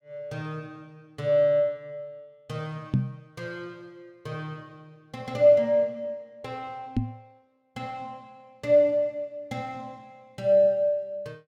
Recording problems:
microphone thump; at 3 s and at 7 s; peak +5 dB vs average level

